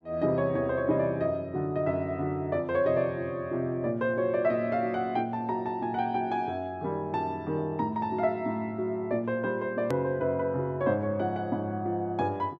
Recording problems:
click at an edit; at 10 s

